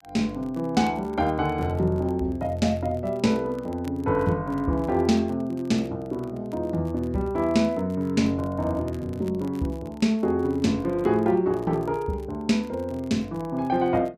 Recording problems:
crackling; vinyl, SNR 30 dB

